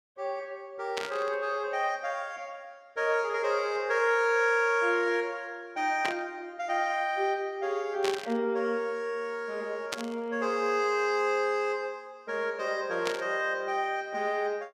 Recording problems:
static burst; 5 times, first at 1 s; peak +2 dB vs average level

